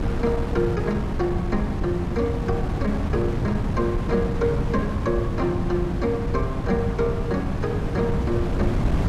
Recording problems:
electrical hum; 50 Hz, harmonics up to 500 Hz, SNR 11 dB
wind noise; below 250 Hz, SNR 1 dB

